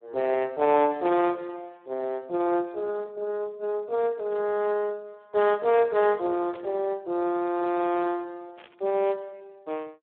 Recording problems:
telephone audio; 260 Hz to 3.5 kHz, Speex
burst of static; at 1 s, at 6.5 s and at 8.5 s; peak -16 dB vs average level

